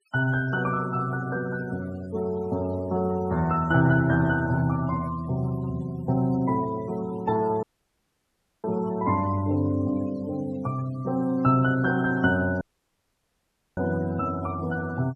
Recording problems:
denoising artefacts; signal-to-artefact ratio 20 dB
dropout; at 7.5 s for 1 s and at 13 s for 1 s

